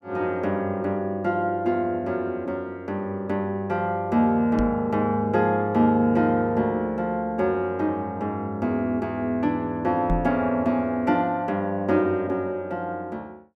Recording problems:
microphone bump; at 4.5 s and at 10 s; peak +2 dB vs average level

